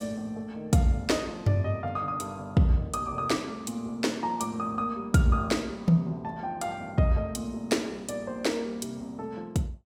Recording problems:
none

